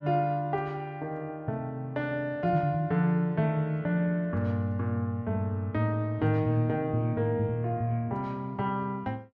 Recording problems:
none

